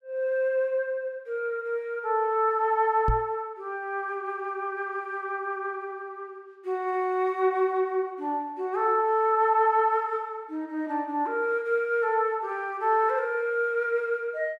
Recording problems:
microphone bump; at 3 s; peak +3 dB vs average level

